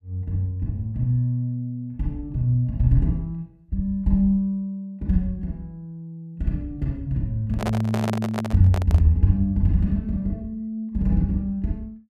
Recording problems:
microphone handling noise; from 7.5 to 9 s; peak 0 dB vs average level

